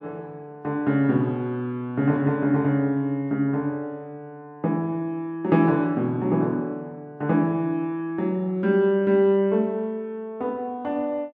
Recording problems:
none

